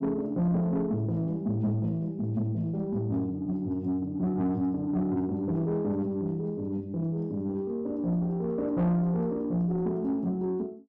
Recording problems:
distortion; soft clipping, signal-to-distortion ratio 12 dB

